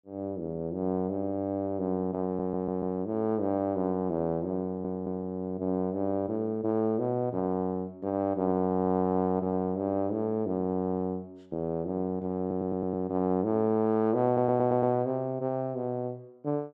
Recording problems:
audio stuttering; 4 times, first at 2.5 s

